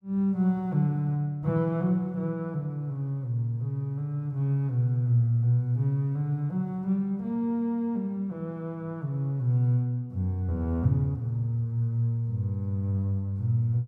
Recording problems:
none

